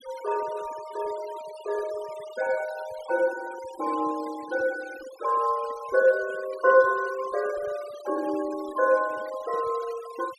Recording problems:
denoising artefacts; signal-to-artefact ratio 18 dB

